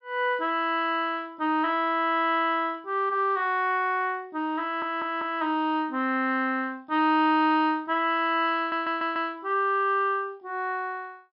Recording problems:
treble cut off; nothing above 5.5 kHz
audio stuttering; at 4.5 s and at 8.5 s

